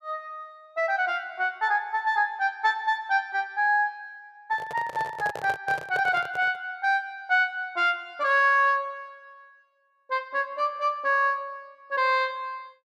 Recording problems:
handling noise; from 4.5 to 6.5 s; peak -6 dB vs average level

